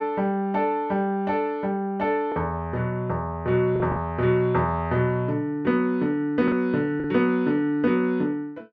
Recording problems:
packet loss; 2% of the sound replaced, filled with the last packet

